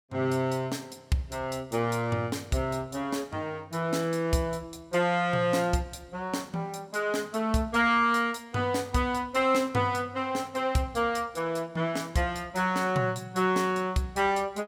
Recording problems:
none

